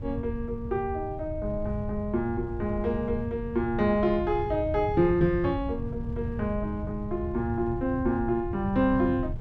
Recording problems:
wind on the microphone; below 120 Hz, SNR 8 dB

